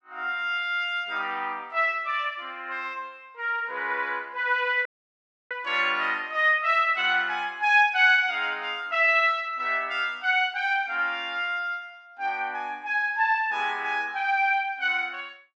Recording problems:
dropout; at 5 s for 0.5 s

